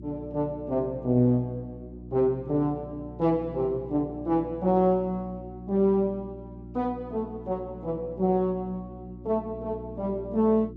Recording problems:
hum; 60 Hz, harmonics up to 360 Hz, SNR 15 dB

